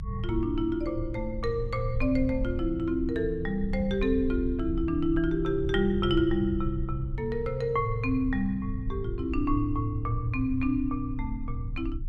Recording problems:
rumble; below 76 Hz, SNR 8 dB

